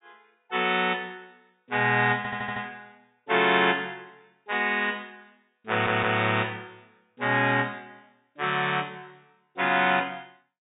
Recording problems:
low-pass filter; nothing above 4 kHz
stutter; at 2 s and at 5.5 s

